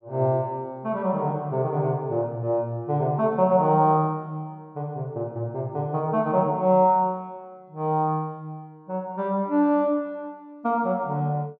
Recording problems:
treble missing; nothing above 8 kHz

